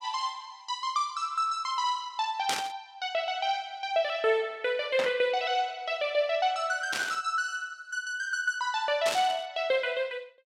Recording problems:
burst of static; 4 times, first at 2.5 s; peak +3 dB vs average level

